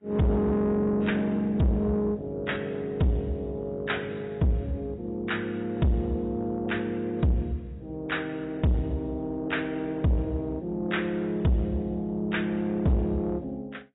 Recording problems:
lossy compression; AAC, log-spectral distance 2 dB, nothing above 3.8 kHz
distorted audio; soft clipping, signal-to-distortion ratio 8 dB

